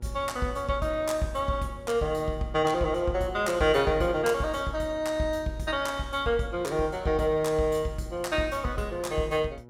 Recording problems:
electrical hum; 60 Hz, harmonics up to 1.3 kHz, SNR 23 dB

